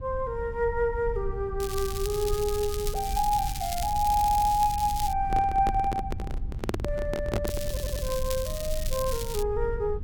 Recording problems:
low-frequency rumble; below 74 Hz, SNR 8 dB
crackle; from 1.5 to 5 s and from 7.5 to 9.5 s; loose cable, SNR 9 dB
stutter; at 4 s and at 7.5 s
handling noise; from 5.5 to 8 s; peak +3 dB vs average level

